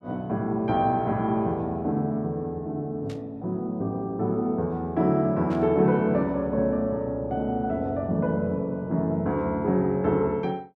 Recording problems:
static burst; at 3 s and at 5.5 s; peak -15 dB vs average level

